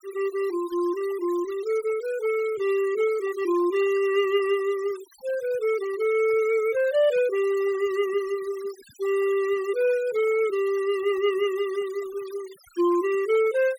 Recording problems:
noise reduction artefacts; signal-to-artefact ratio 21 dB

